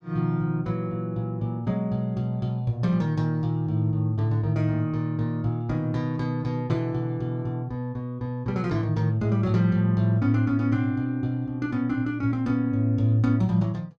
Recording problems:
none

